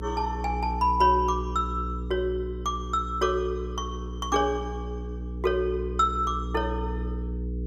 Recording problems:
electrical hum; 60 Hz, harmonics up to 480 Hz, SNR 7 dB

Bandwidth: 15.5 kHz